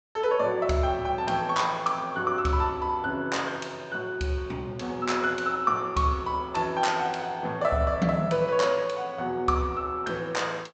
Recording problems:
treble missing; nothing above 8 kHz

